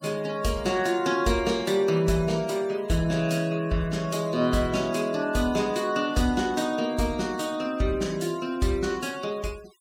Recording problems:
denoising artefacts; signal-to-artefact ratio 22 dB

